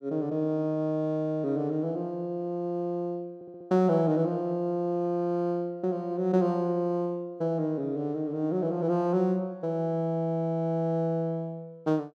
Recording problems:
stutter; at 3.5 s

